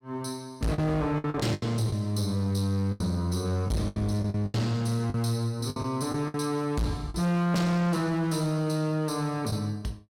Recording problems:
distortion; hard clipping, signal-to-distortion ratio 8 dB
lost packets; 8% of the sound replaced, filled with the last packet

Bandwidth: 16.5 kHz